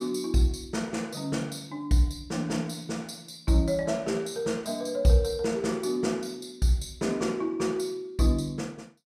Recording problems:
none

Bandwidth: 15 kHz